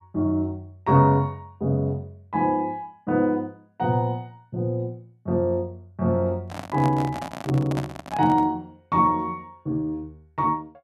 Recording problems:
handling noise; from 6.5 to 8.5 s; peak -3 dB vs average level

